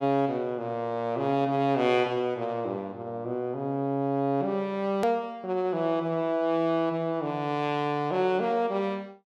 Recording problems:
hard cut with a click; at 5 s

